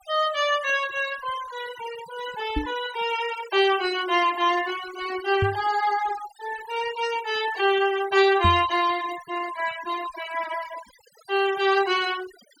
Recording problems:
noise reduction artefacts; signal-to-artefact ratio 15 dB
knock on the microphone; at 2.5 s, at 5.5 s and at 8.5 s; peak +3 dB vs average level

